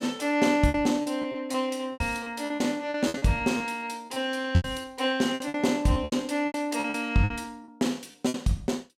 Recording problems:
lost packets; 15% of the sound replaced, filled with repeated pitch periods

